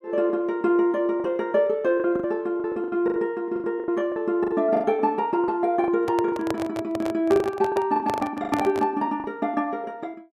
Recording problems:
lost packets; 11% of the sound replaced, filled with the last packet
microphone handling noise; from 6 to 9 s; peak 0 dB vs average level

